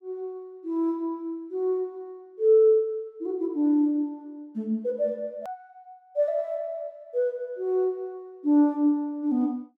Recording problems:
click at an edit; at 5.5 s

